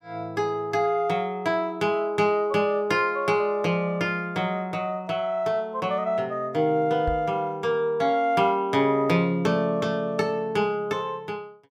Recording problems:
knock on the microphone; at 7 s; peak -3 dB vs average level

